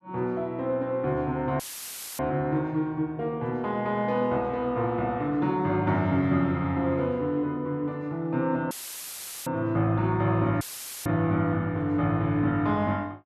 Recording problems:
audio cutting out; at 1.5 s for 0.5 s, at 8.5 s for 1 s and at 11 s; filled with static

